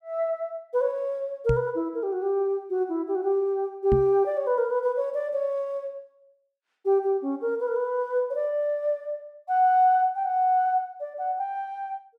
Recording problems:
microphone bump; at 1.5 s and at 4 s; peak +2 dB vs average level

